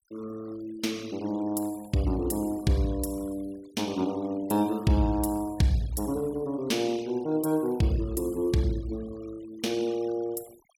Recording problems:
denoising artefacts; signal-to-artefact ratio 23 dB

